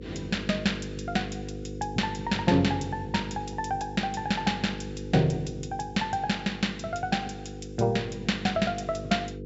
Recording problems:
treble missing; nothing above 8 kHz
hum; 50 Hz, harmonics up to 500 Hz, SNR 10 dB

